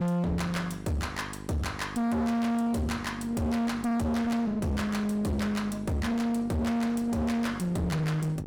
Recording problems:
distorted audio; hard clipping, uneven, signal-to-distortion ratio 4 dB
hum; 50 Hz, harmonics up to 1 kHz, SNR 14 dB

